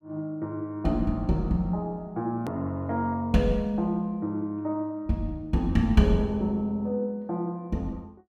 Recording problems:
edit click; at 2.5 s

